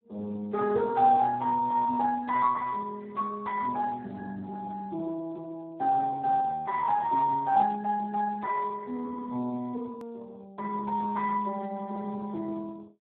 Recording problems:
phone line; 220 Hz to 2 kHz, Speex
click at an edit; at 10 s

